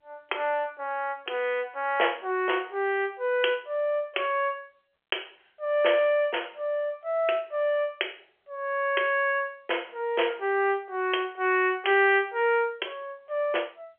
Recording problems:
telephone audio; 320 Hz to 3.3 kHz, G.711

